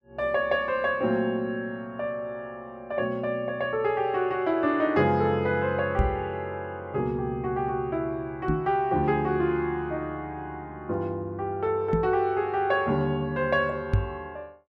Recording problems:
knock on the microphone; 4 times, first at 6 s; peak +6 dB vs average level

